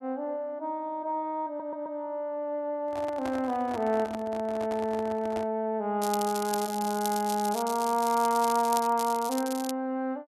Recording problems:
audio stuttering; at 1.5 s
microphone handling noise; from 3 to 5.5 s; peak -5 dB vs average level
crackling; from 6 to 9.5 s; loose cable, SNR 9 dB

